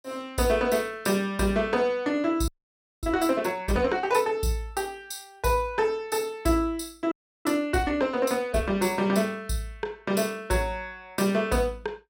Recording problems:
audio freezing; at 2.5 s for 0.5 s and at 7 s

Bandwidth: 16 kHz